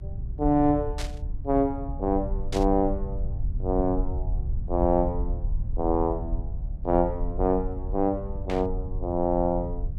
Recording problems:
rumble; below 68 Hz, SNR 6 dB
burst of static; at 1 s, at 2.5 s and at 8.5 s; peak -5 dB vs average level

